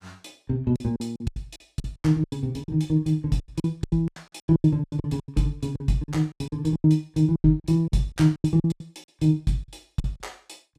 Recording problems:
lost packets; 19% of the sound replaced, filled with silence

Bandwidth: 15 kHz